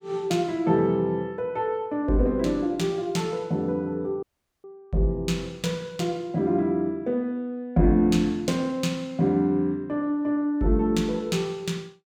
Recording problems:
audio cutting out; at 4 s

